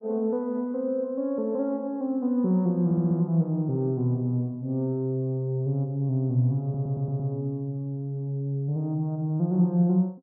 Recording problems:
audio stuttering; at 3 s and at 6.5 s

